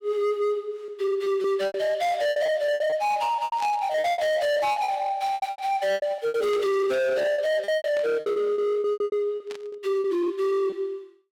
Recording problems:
distortion; hard clipping, signal-to-distortion ratio 7 dB
lost packets; 15% of the sound replaced, filled with repeated pitch periods
burst of static; 4 times, first at 3.5 s; peak -10 dB vs average level

